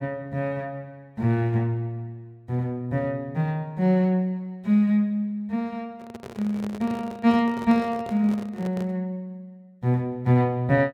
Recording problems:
microphone handling noise; from 6 to 9 s; peak -9 dB vs average level

